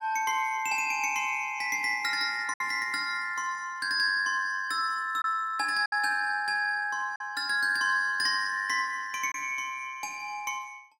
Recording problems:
packet loss; 1.8% of the sound replaced, filled with silence

